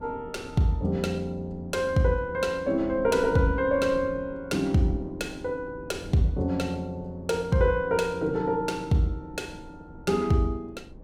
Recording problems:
wind on the microphone; below 280 Hz, SNR 19 dB

